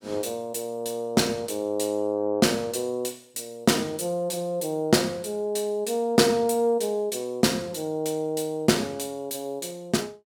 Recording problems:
none

